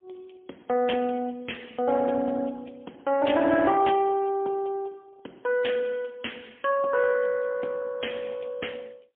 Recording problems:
phone line; 240 Hz to 3.3 kHz, AMR-NB, then MP3

